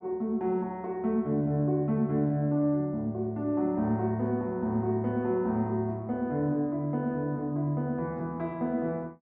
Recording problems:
none

